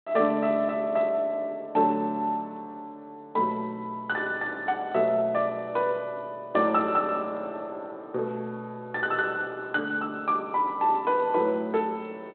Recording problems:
telephone audio; 240 Hz to 3.6 kHz, G.726

